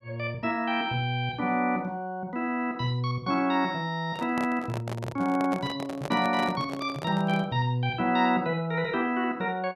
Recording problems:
microphone handling noise; from 4 to 7.5 s; peak -4 dB vs average level

